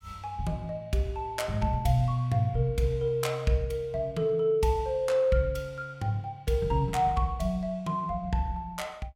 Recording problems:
none

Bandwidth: 16.5 kHz